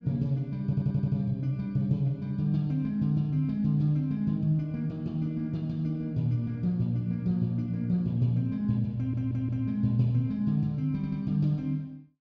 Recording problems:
audio stuttering; at 0.5 s, at 9 s and at 11 s

